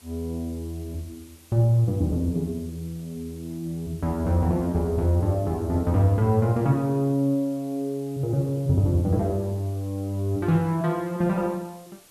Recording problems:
hiss; slope -1 dB per octave, SNR 26 dB

